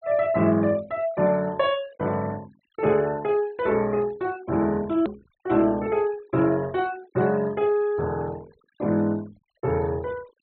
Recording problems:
low-pass filter; nothing above 4.2 kHz
noise reduction artefacts; signal-to-artefact ratio 25 dB
hard cut with a click; at 5 s

